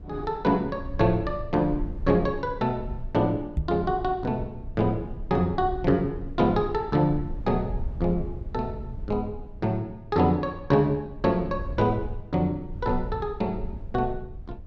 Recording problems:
rumble; below 76 Hz, SNR 12 dB
knock on the microphone; at 3.5 s; peak +3 dB vs average level

